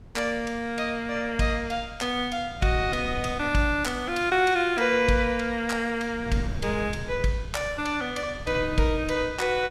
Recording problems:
wind noise; below 160 Hz, SNR 14 dB

